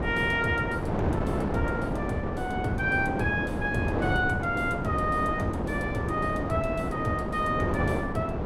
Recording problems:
wind noise; below 580 Hz, SNR 1 dB

